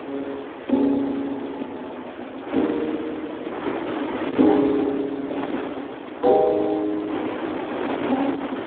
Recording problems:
telephone audio; 220 Hz to 3.6 kHz, Speex
wind noise; below 940 Hz, SNR 6 dB

